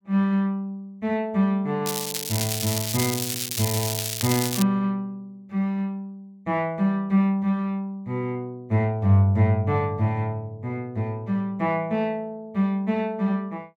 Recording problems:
crackle; from 2 to 4.5 s; loose cable, SNR 2 dB

